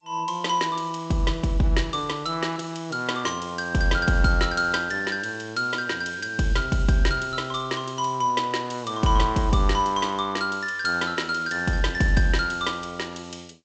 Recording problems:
lossy codec; G.722, log-spectral distance 4 dB, nothing above 7.8 kHz

